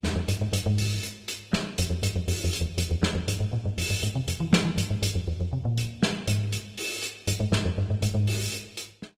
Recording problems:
codec artefacts; Opus, log-spectral distance 4 dB, nothing above 18.9 kHz

